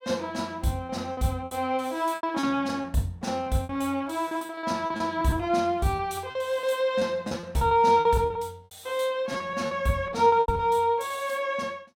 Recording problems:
lost packets; 12% of the sound replaced, filled with repeated pitch periods

